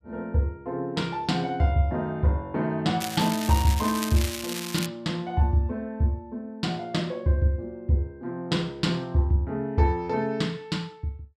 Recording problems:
crackling; from 3 to 5 s; loose cable, SNR 7 dB

